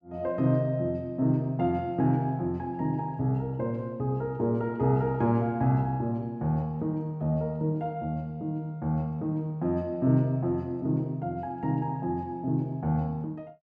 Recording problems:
none

